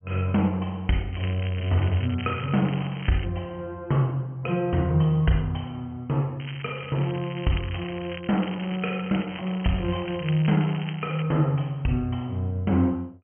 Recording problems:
low-pass filter; nothing above 3.2 kHz
crackling; from 1 to 3.5 s and from 6.5 to 11 s; loose cable, SNR 14 dB

